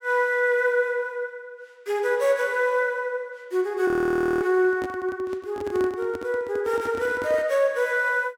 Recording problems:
audio freezing; at 4 s for 0.5 s
handling noise; from 4.5 to 7.5 s; peak -7 dB vs average level

